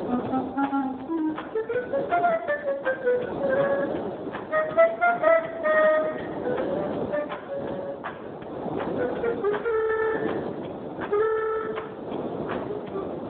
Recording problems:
telephone audio; 190 Hz to 2 kHz, Speex
wind noise; below 690 Hz, SNR 7 dB

